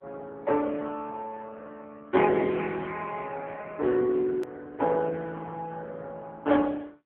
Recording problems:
phone line; 190 Hz to 3.4 kHz, AMR-NB
hard cut with a click; at 4.5 s

